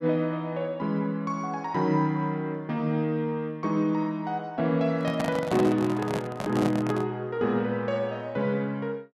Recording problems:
handling noise; from 5 to 7 s; peak +1 dB vs average level

